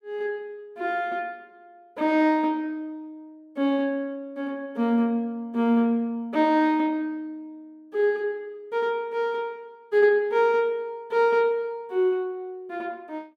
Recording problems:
none

